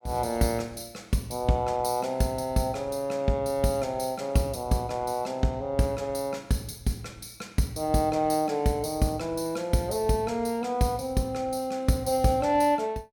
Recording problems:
none

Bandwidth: 17.5 kHz